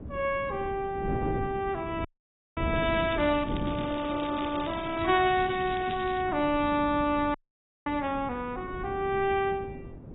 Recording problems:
lossy compression; AAC, log-spectral distance 6 dB, nothing above 3.4 kHz
wind noise; below 310 Hz, SNR 10 dB
frozen audio; at 2 s for 0.5 s and at 7.5 s for 0.5 s
crackling; from 3 to 6 s; loose cable, SNR 15 dB

